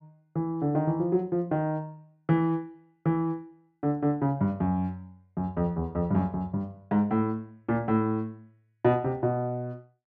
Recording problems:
none

